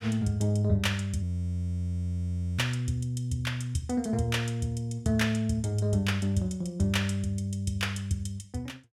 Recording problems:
frozen audio; at 1 s for 1.5 s

